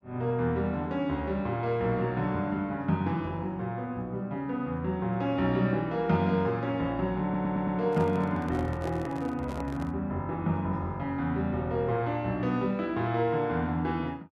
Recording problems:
audio stuttering; at 7 s
handling noise; from 8 to 10 s; peak -6 dB vs average level

